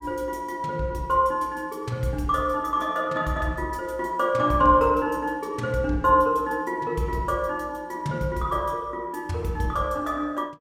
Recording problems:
none

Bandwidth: 16 kHz